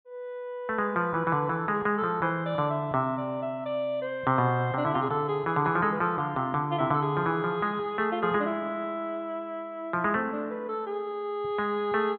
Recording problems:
treble cut off; nothing above 4 kHz

